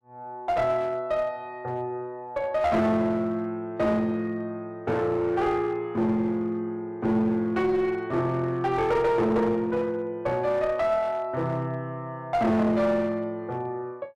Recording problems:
distorted audio; hard clipping, uneven, signal-to-distortion ratio 10 dB

